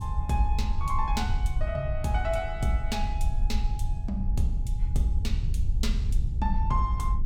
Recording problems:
low-frequency rumble; below 70 Hz, SNR -1 dB

